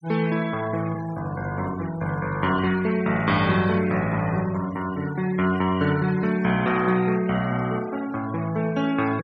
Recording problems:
denoising artefacts; signal-to-artefact ratio 16 dB

